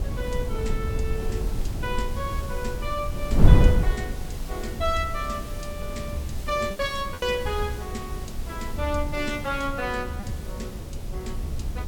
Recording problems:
hiss; slope -3 dB per octave, SNR 13 dB
wind noise; below 100 Hz, SNR -1 dB
lost packets; 1.9% of the sound replaced, filled with repeated pitch periods

